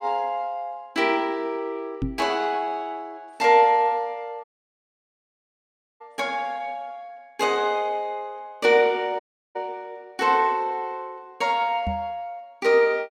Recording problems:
microphone bump; at 2 s and at 12 s; peak 0 dB vs average level
audio cutting out; at 4.5 s for 1.5 s and at 9 s

